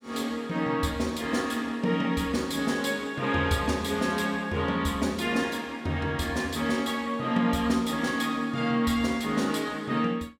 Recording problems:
none

